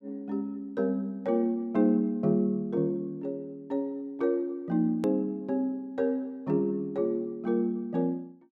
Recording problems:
hard cut with a click; at 5 s

